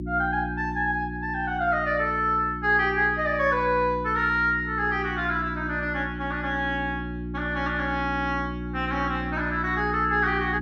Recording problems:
hum; 60 Hz, harmonics up to 360 Hz, SNR 8 dB

